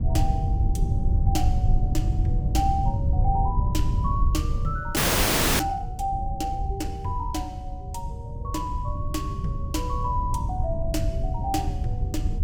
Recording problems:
wind noise; below 100 Hz, SNR -4 dB
frozen audio; at 5 s for 0.5 s

